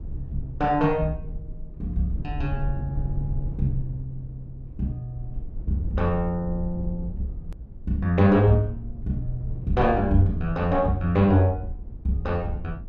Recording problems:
rumble; below 74 Hz, SNR 11 dB
edit click; at 7.5 s

